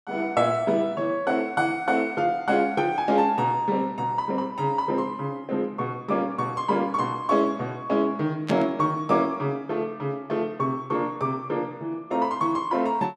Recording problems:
static burst; at 8.5 s; peak -4 dB vs average level

